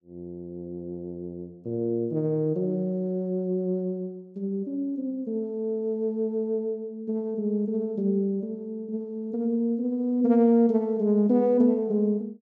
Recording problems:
none

